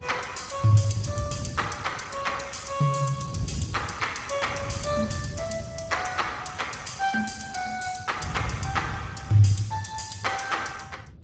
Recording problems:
codec artefacts; Speex, log-spectral distance 6 dB, nothing above 7.8 kHz
wind noise; below 170 Hz, SNR 10 dB

